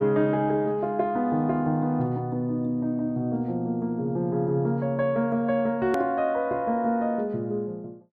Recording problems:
hard cut with a click; at 6 s

